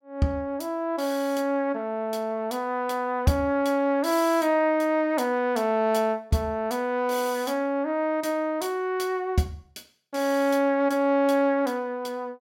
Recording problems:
none

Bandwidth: 17.5 kHz